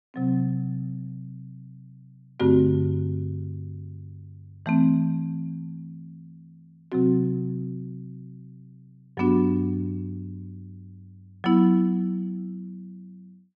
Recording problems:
none

